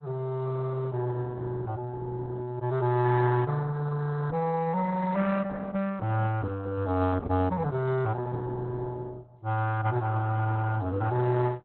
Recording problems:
codec artefacts; Opus, log-spectral distance 3 dB, nothing above 4.1 kHz

